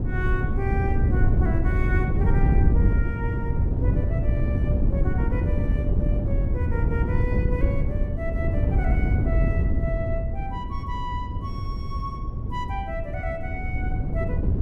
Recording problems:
wind on the microphone; below 120 Hz, SNR -9 dB

